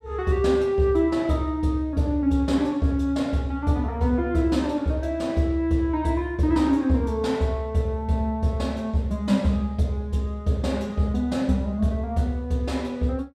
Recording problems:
none

